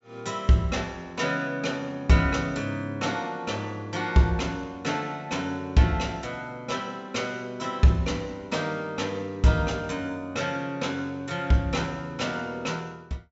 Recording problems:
low-pass filter; nothing above 8 kHz

